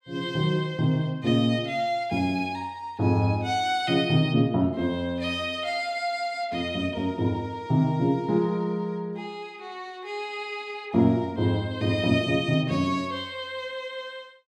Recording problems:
none

